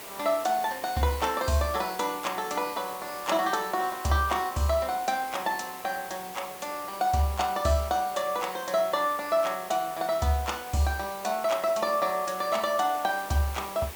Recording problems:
background hiss; slope -3 dB per octave, SNR 13 dB

